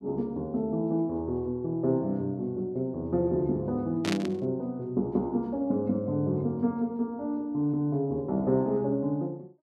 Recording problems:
burst of static; at 4 s; peak 0 dB vs average level

